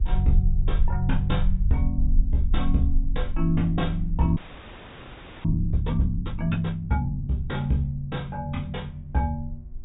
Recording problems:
treble cut off; nothing above 4 kHz
hum; 60 Hz, harmonics up to 1.1 kHz, SNR 30 dB
rumble; below 50 Hz, strongest tone 26 Hz, SNR 2 dB
audio freezing; at 4.5 s for 1 s

